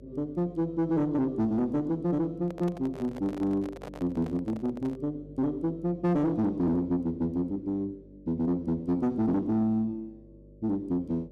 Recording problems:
distortion; soft clipping, signal-to-distortion ratio 11 dB
hum; 50 Hz, harmonics up to 600 Hz, SNR 23 dB
microphone handling noise; from 2.5 to 5 s; peak -9 dB vs average level

